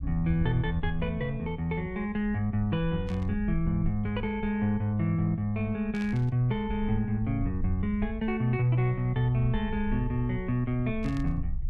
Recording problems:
low-frequency rumble; below 76 Hz, SNR 11 dB
burst of static; at 3 s, at 6 s and at 11 s; peak -12 dB vs average level

